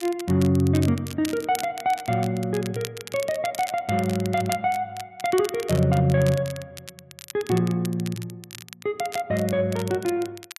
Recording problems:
crackling; vinyl, SNR 15 dB

